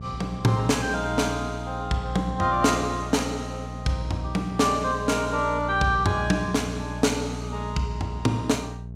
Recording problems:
electrical hum; 60 Hz, harmonics up to 480 Hz, SNR 10 dB

